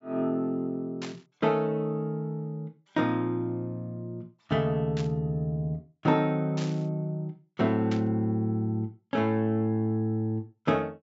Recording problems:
treble cut off; nothing above 7.6 kHz
static burst; 4 times, first at 1 s; peak -7 dB vs average level

